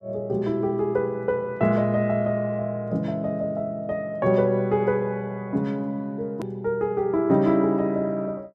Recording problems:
click at an edit; at 6.5 s

